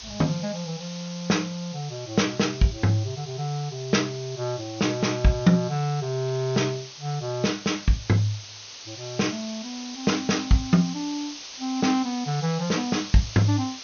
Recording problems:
treble cut off; nothing above 6.5 kHz
hiss; SNR 13 dB

